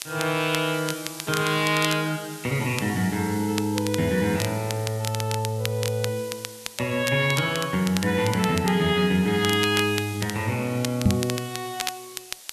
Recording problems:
background hiss; SNR 16 dB
crackle; vinyl, SNR 10 dB
microphone thump; at 11 s; peak +7 dB vs average level

